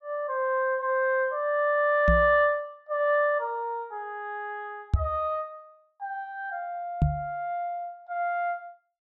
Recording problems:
knock on the microphone; at 2 s, at 5 s and at 7 s; peak +8 dB vs average level

